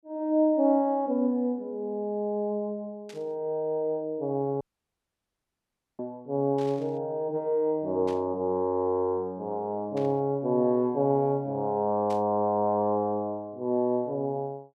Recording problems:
static burst; 5 times, first at 3 s; peak -14 dB vs average level
audio cutting out; at 4.5 s for 1.5 s

